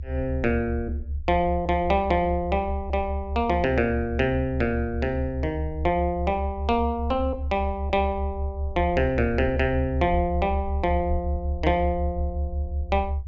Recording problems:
treble missing; nothing above 8 kHz
rumble; below 74 Hz, strongest tone 70 Hz, SNR 5 dB

